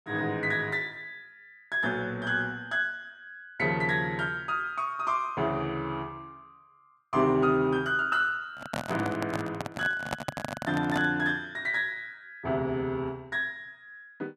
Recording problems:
handling noise; from 8.5 to 11 s; peak +1 dB vs average level

